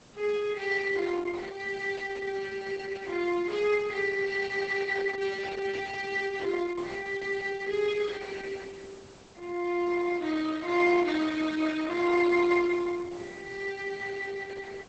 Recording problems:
lossy compression; Opus, log-spectral distance 4 dB, nothing above 8 kHz
background hiss; slope -4 dB per octave, SNR 23 dB

